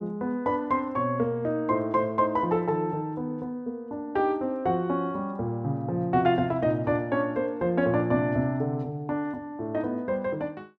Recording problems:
none

